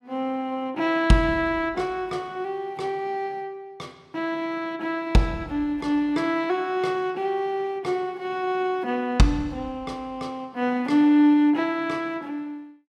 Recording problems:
none

